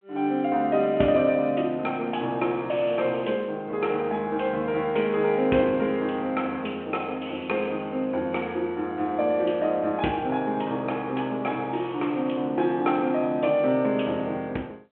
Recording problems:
phone line; 170 Hz to 3.4 kHz, G.726

